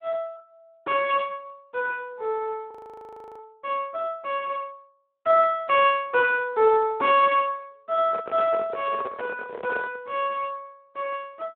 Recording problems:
telephone audio; 300 Hz to 3.3 kHz, Speex
audio freezing; at 2.5 s for 0.5 s
handling noise; from 8 to 10 s; peak -3 dB vs average level

